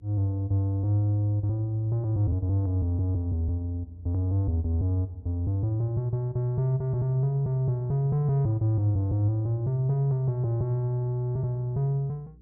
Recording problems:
hum; 60 Hz, harmonics up to 420 Hz, SNR 27 dB

